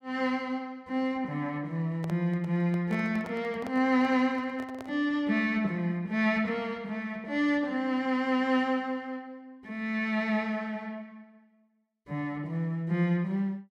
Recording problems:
handling noise; from 2 to 5 s; peak -9 dB vs average level

